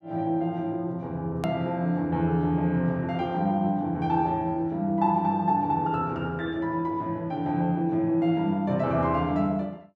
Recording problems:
click at an edit; at 1.5 s

